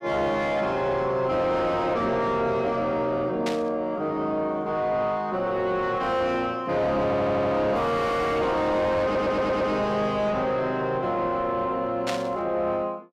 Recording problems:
distortion; soft clipping, signal-to-distortion ratio 7 dB
static burst; at 3.5 s and at 12 s; peak -2 dB vs average level
audio stuttering; at 7 s and at 9 s

